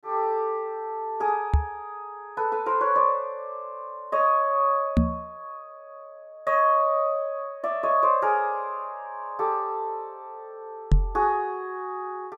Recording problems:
microphone bump; at 1.5 s, at 5 s and at 11 s; peak +8 dB vs average level

